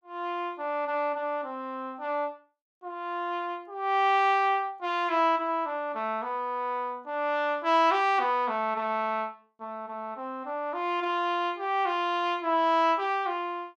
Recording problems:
none

